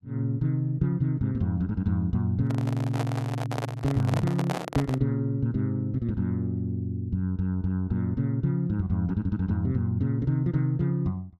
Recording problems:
handling noise; from 2.5 to 5 s; peak 0 dB vs average level

